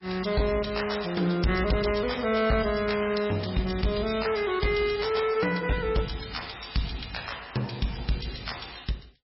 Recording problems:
codec artefacts; MP3, log-spectral distance 9 dB, nothing above 5.5 kHz
distorted audio; hard clipping, uneven, signal-to-distortion ratio 11 dB

